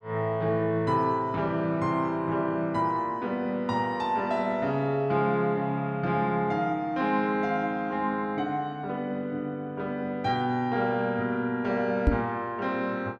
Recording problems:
microphone bump; at 12 s; peak +8 dB vs average level

